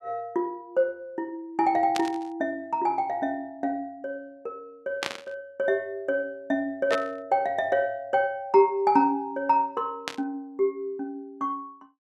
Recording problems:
burst of static; 4 times, first at 2 s; peak +2 dB vs average level

